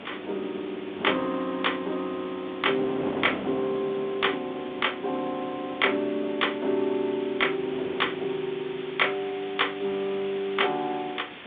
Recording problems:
telephone audio; 220 Hz to 3.6 kHz, G.726
background hiss; SNR 16 dB
wind noise; below 720 Hz, SNR 13 dB

